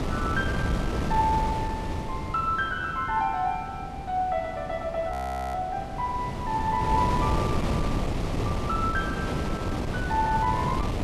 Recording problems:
wind noise; below 460 Hz, SNR 2 dB
audio freezing; at 5 s

